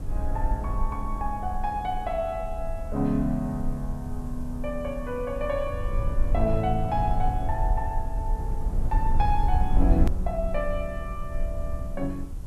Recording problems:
hiss; slope -1 dB per octave, SNR 27 dB
low-frequency rumble; below 60 Hz, strongest tone 18 Hz, SNR 1 dB
hard cut with a click; at 10 s

